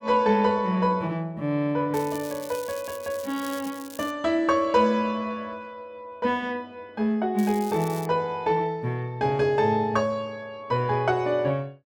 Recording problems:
crackling; from 2 to 4 s and at 7.5 s; loose cable, SNR 17 dB

